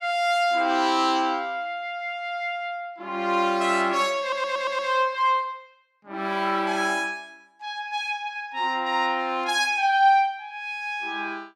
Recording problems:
audio stuttering; at 4 s

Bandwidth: 16 kHz